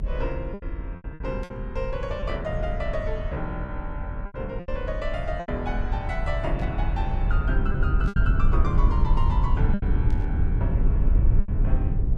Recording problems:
rumble; below 78 Hz, SNR -6 dB
packet loss; 7% of the sound replaced, filled with repeated pitch periods
static burst; 4 times, first at 1.5 s; peak -11 dB vs average level

